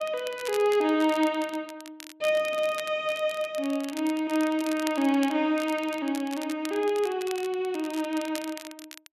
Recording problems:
crackle; vinyl, SNR 16 dB

